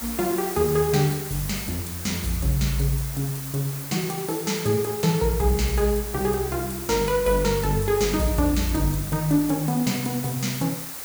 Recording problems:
background hiss; slope -1 dB per octave, SNR 8 dB

